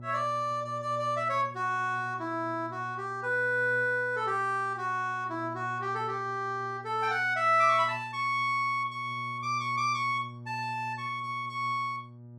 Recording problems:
electrical hum; 60 Hz, harmonics up to 600 Hz, SNR 17 dB

